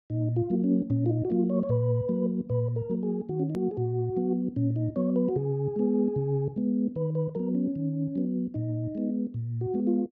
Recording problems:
click at an edit; at 3.5 s

